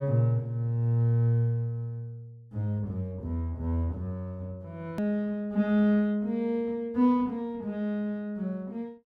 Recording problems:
hard cut with a click; at 5 s

